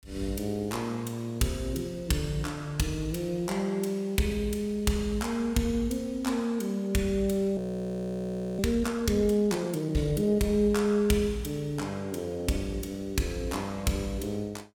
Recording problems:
audio freezing; at 7.5 s for 1 s

